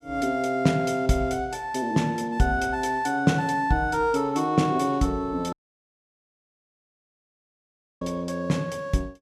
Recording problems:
dropout; at 5.5 s for 2.5 s

